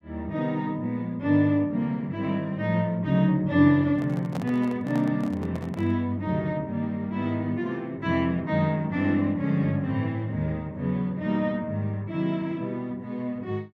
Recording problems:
microphone handling noise; from 4 to 6 s; peak -5 dB vs average level

